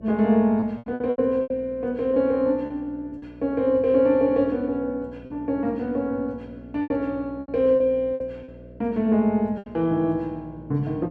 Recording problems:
hum; 60 Hz, harmonics up to 660 Hz, SNR 22 dB
packet loss; 8% of the sound replaced, filled with repeated pitch periods

